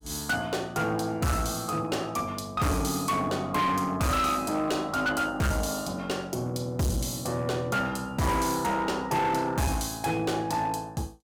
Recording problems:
distorted audio; hard clipping, uneven, signal-to-distortion ratio 7 dB

